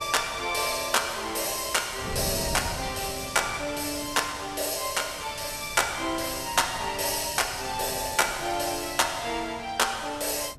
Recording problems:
wind noise; below 250 Hz, SNR 16 dB

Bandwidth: 14.5 kHz